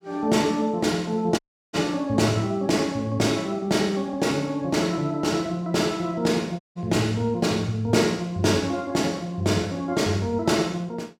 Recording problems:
dropout; at 1.5 s and at 6.5 s

